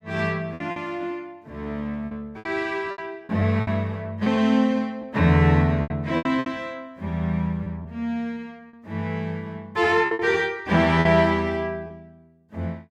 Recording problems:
packet loss; 8% of the sound replaced, filled with repeated pitch periods

